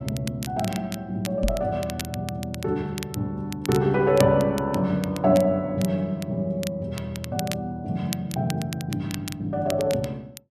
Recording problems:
crackling; vinyl, SNR 13 dB
knock on the microphone; at 1.5 s; peak +3 dB vs average level

